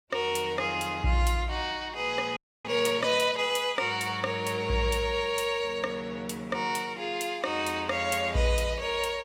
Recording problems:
frozen audio; at 2.5 s

